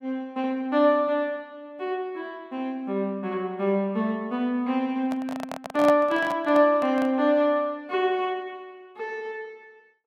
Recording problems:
microphone handling noise; from 5 to 7 s; peak 0 dB vs average level

